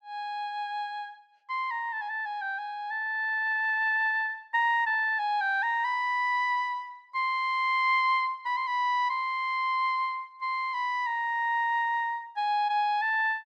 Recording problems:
none

